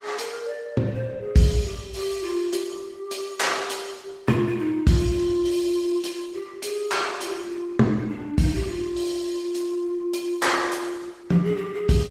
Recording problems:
lossy codec; Opus, log-spectral distance 4 dB

